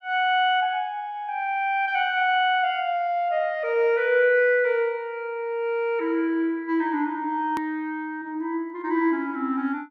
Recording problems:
click at an edit; at 7.5 s

